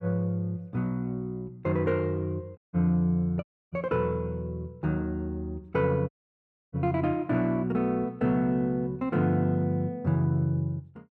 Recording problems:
audio cutting out; at 2.5 s, at 3.5 s and at 6 s for 0.5 s

